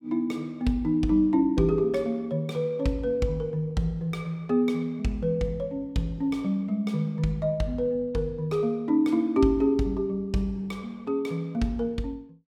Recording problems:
none

